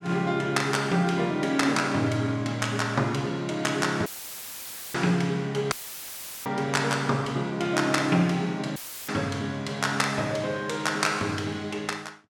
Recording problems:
audio cutting out; at 4 s for 1 s, at 5.5 s for 0.5 s and at 9 s; filled with static

